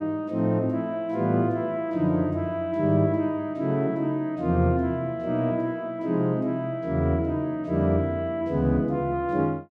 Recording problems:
none

